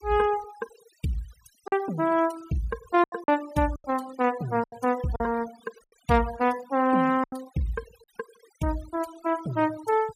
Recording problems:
noise reduction artefacts; signal-to-artefact ratio 19 dB
packet loss; 5% of the sound replaced, filled with silence

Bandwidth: 15.5 kHz